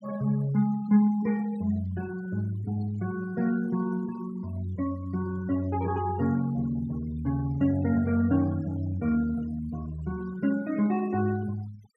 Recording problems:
noise reduction artefacts; signal-to-artefact ratio 21 dB

